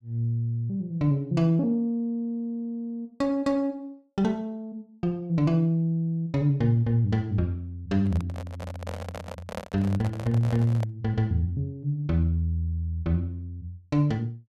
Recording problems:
microphone handling noise; from 8 to 11 s; peak -3 dB vs average level

